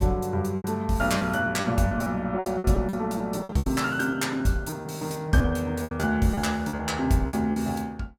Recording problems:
packet loss; 13% of the sound replaced, filled with repeated pitch periods

